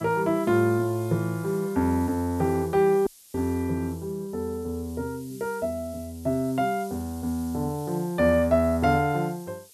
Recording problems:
hiss; SNR 21 dB
dropout; at 3 s

